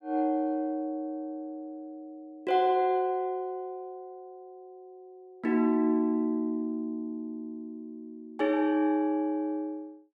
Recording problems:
none

